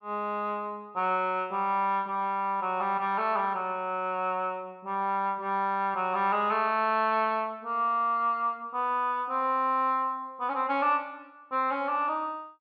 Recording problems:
none

